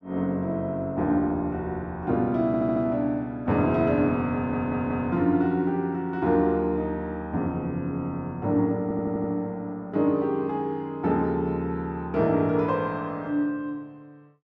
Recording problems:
stutter; at 2.5 s, at 4.5 s and at 9 s

